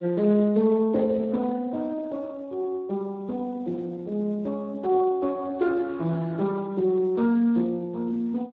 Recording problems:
lossy codec; Speex, log-spectral distance 2 dB

